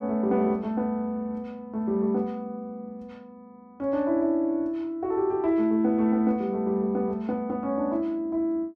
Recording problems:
none

